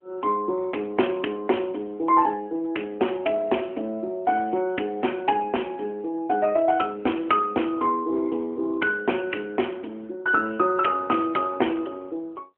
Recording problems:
telephone audio; 260 Hz to 3.2 kHz, AMR-NB

